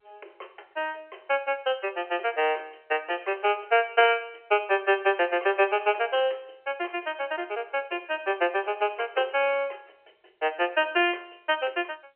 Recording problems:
telephone audio; 320 Hz to 3.2 kHz, G.711

